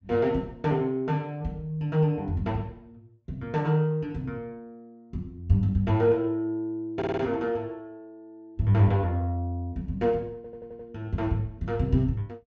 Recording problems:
treble missing; nothing above 8 kHz
audio stuttering; at 7 s and at 10 s

